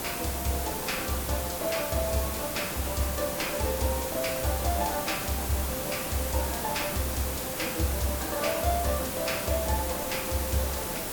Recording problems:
hiss; slope -4 dB per octave, SNR 1 dB

